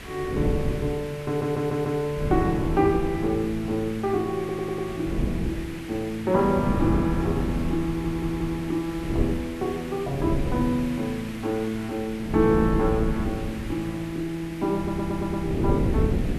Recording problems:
hiss; SNR 15 dB
wind noise; below 250 Hz, SNR 4 dB
stutter; 4 times, first at 1.5 s

